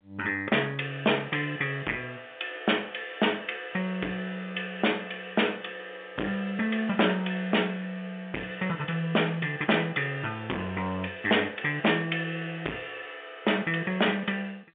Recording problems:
telephone audio; 260 Hz to 3.5 kHz, G.711
distorted audio; hard clipping, signal-to-distortion ratio 11 dB

